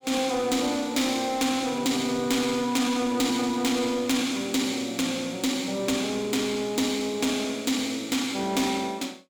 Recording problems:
distorted audio; soft clipping, signal-to-distortion ratio 11 dB

